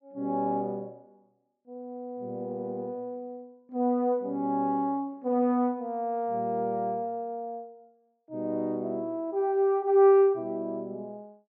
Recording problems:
treble cut off; nothing above 8 kHz

